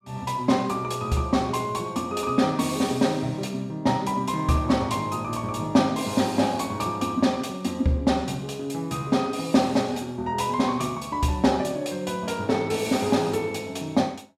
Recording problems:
none

